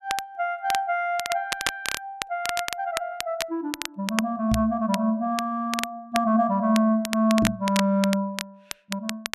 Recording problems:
crackle; vinyl, SNR 8 dB
microphone bump; at 4.5 s and at 7.5 s; peak +4 dB vs average level

